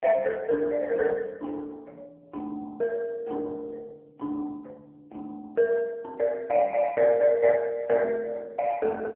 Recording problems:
phone line; 280 Hz to 2 kHz, AMR-NB

